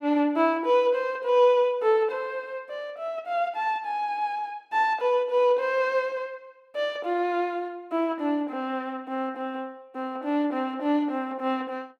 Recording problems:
none

